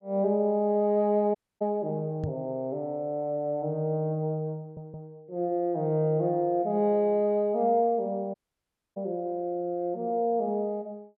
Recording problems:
dropout; at 1.5 s and at 8.5 s for 0.5 s
microphone thump; at 2 s; peak -1 dB vs average level
stutter; at 4.5 s

